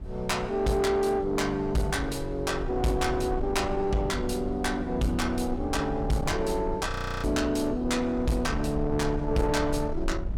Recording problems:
distortion; soft clipping, signal-to-distortion ratio 11 dB
rumble; below 84 Hz, SNR 10 dB
frozen audio; at 7 s

